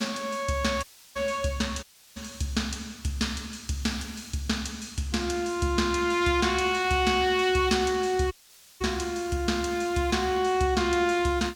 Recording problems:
background hiss; slope +2 dB per octave, SNR 24 dB
audio cutting out; at 1 s, at 2 s and at 8.5 s

